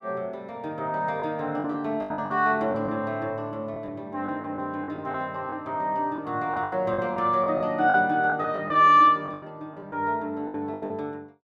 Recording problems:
lost packets; 10% of the sound replaced, filled with the last packet

